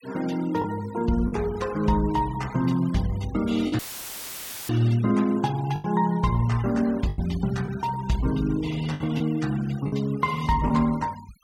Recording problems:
denoising artefacts; signal-to-artefact ratio 20 dB
lost packets; 4% of the sound replaced, filled with the last packet
dropout; at 4 s for 1 s; filled with static

